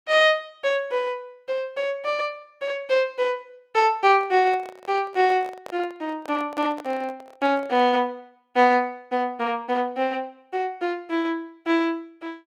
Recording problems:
microphone handling noise; from 4 to 8 s; peak -8 dB vs average level

